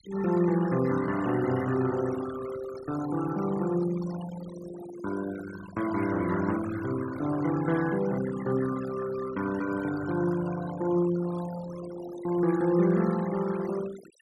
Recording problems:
denoising artefacts; signal-to-artefact ratio 14 dB

